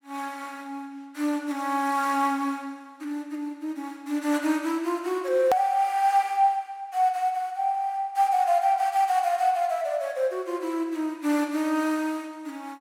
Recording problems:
hard cut with a click; at 5.5 s

